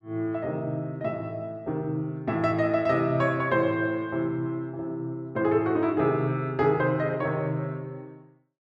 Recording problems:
none

